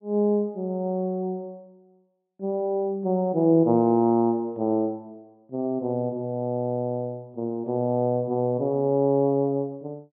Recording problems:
low-pass filter; nothing above 3.7 kHz

